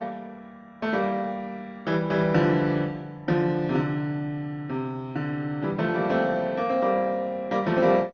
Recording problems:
codec artefacts; Opus, then MP2, log-spectral distance 2 dB, nothing above 6 kHz

